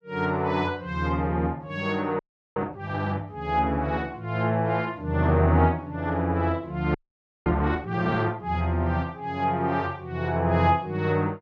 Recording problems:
audio freezing; at 2 s and at 7 s for 0.5 s

